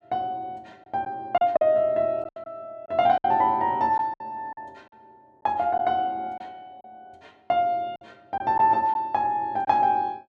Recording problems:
packet loss; 6% of the sound replaced, filled with silence

